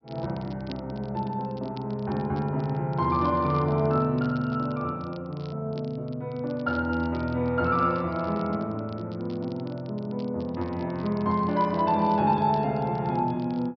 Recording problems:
low-pass filter; nothing above 5.5 kHz
crackle; vinyl, SNR 26 dB

